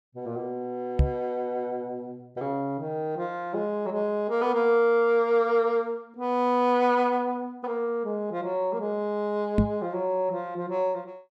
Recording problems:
microphone thump; at 1 s and at 9.5 s; peak +8 dB vs average level

